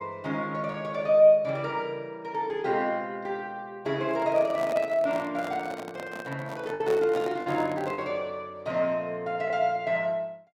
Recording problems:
lost packets; 1.7% of the sound replaced, filled with the last packet
microphone handling noise; from 4 to 8 s; peak -5 dB vs average level

